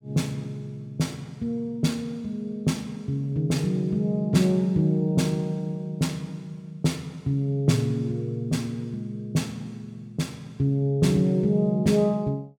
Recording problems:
none

